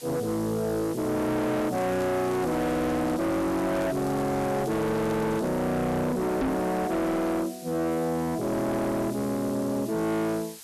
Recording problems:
distortion; hard clipping, signal-to-distortion ratio 7 dB
hiss; slope +2 dB per octave, SNR 18 dB
crackle; from 1.5 to 5.5 s; loose cable, SNR 21 dB
knock on the microphone; at 6.5 s; peak +4 dB vs average level

